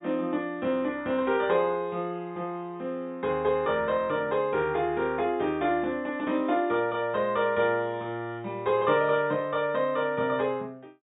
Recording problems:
low-pass filter; nothing above 4 kHz

